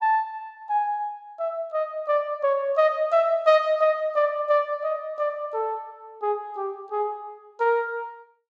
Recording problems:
none

